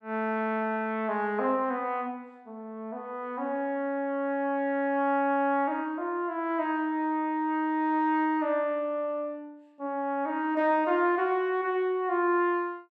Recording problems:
none

